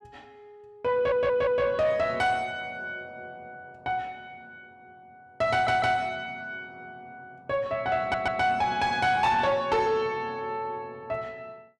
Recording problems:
distorted audio; soft clipping, signal-to-distortion ratio 11 dB
stutter; at 1 s, at 5.5 s and at 8 s

